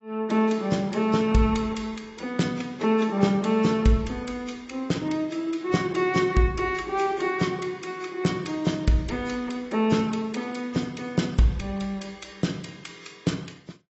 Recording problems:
lossy compression; AAC, log-spectral distance 3 dB, nothing above 7.8 kHz

